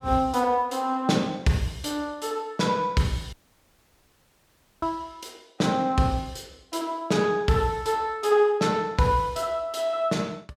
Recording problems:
dropout; at 3.5 s for 1.5 s

